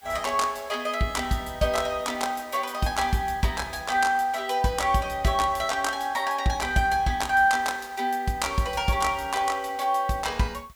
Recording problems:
background hiss; slope +1 dB per octave, SNR 28 dB

